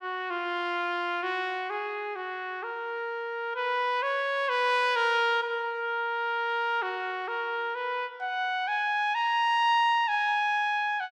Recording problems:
none

